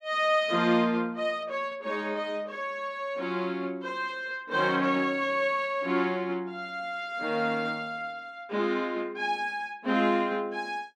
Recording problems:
none

